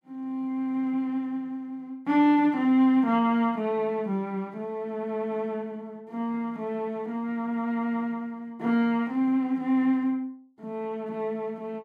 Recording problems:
none

